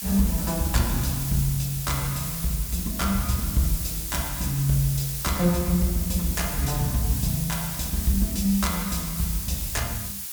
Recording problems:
background hiss; slope +3 dB per octave, SNR 4 dB

